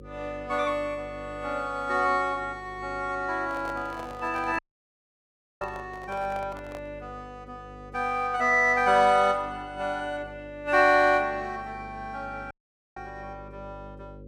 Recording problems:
hum; 50 Hz, harmonics up to 550 Hz, SNR 21 dB
microphone handling noise; from 3.5 to 7 s; peak -10 dB vs average level
audio cutting out; at 4.5 s for 1 s and at 13 s

